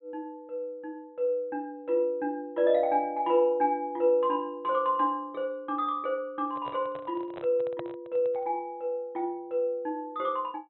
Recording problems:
low-pass filter; nothing above 3.9 kHz
handling noise; from 6.5 to 8.5 s; peak -5 dB vs average level

